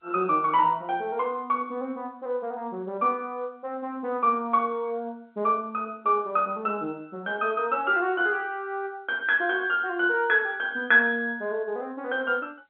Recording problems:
phone line; 240 Hz to 3.6 kHz, G.711

